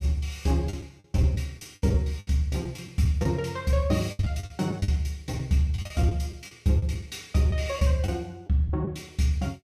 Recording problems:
packet loss; 9% of the sound replaced, filled with the last packet

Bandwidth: 15.5 kHz